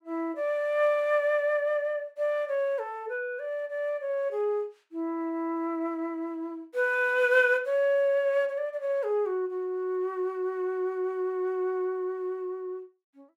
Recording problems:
none

